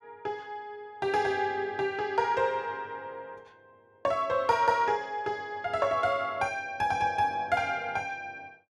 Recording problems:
none

